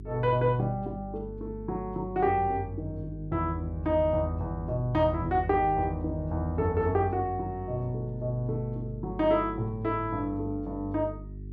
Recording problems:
hum; 50 Hz, harmonics up to 400 Hz, SNR 12 dB

